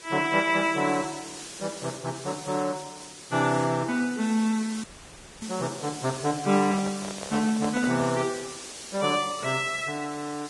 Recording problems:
lossy compression; Vorbis, log-spectral distance 10 dB
background hiss; SNR 12 dB
dropout; at 5 s for 0.5 s
handling noise; from 6.5 to 8 s; peak -4 dB vs average level

